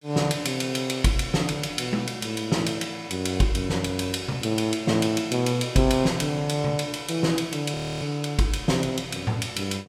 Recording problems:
audio freezing; at 7.5 s

